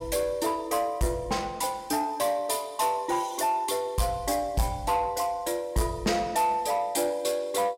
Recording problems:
distortion; soft clipping, signal-to-distortion ratio 11 dB

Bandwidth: 16 kHz